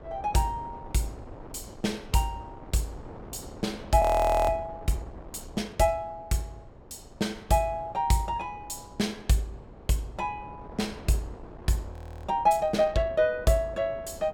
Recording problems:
wind on the microphone; below 560 Hz, SNR 18 dB
frozen audio; at 4 s and at 12 s

